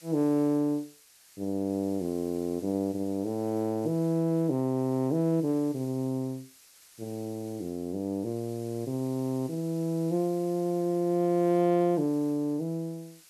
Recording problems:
background hiss; slope +2 dB per octave, SNR 24 dB

